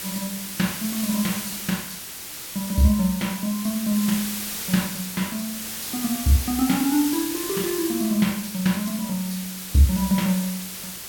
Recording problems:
hiss; slope 0 dB per octave, SNR 6 dB

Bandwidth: 17 kHz